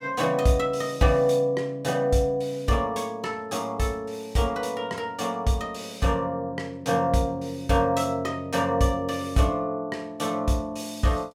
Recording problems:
none

